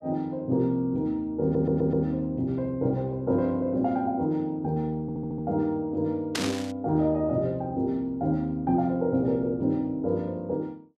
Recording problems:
stutter; at 1.5 s and at 5 s
burst of static; at 6.5 s; peak +2 dB vs average level

